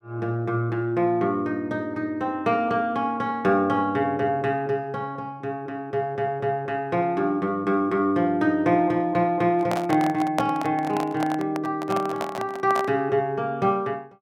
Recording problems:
handling noise; from 9.5 to 13 s; peak +3 dB vs average level

